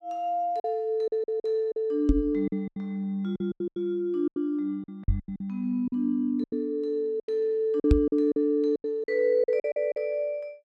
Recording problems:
packet loss; 13% of the sound replaced, filled with silence
microphone thump; at 2 s, at 5 s and at 8 s; peak +9 dB vs average level

